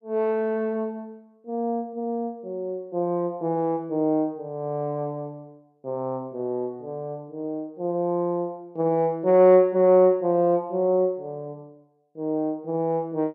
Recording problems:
none

